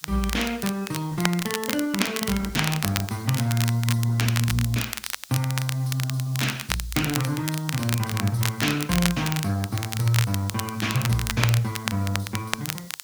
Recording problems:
lossy compression; Opus, log-spectral distance 3 dB, nothing above 19 kHz
background hiss; SNR 20 dB
crackling; vinyl, SNR 5 dB

